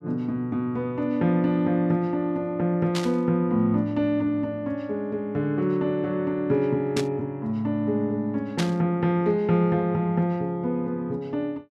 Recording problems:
static burst; at 3 s, at 7 s and at 8.5 s; peak 0 dB vs average level

